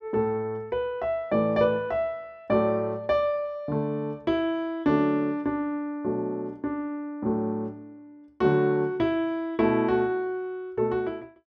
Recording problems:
none

